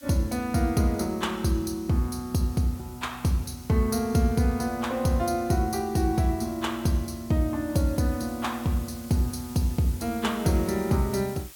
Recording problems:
background hiss; slope +2 dB per octave, SNR 20 dB

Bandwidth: 17.5 kHz